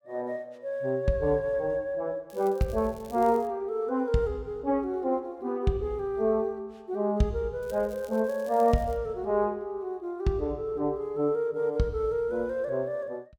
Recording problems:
crackle; from 2.5 to 3.5 s and from 7.5 to 9 s; loose cable, SNR 25 dB

